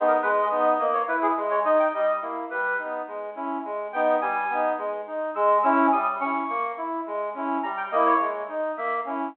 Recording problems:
phone line; 220 Hz to 3.3 kHz, G.726

